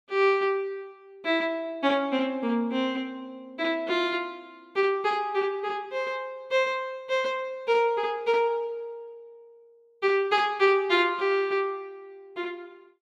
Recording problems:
none

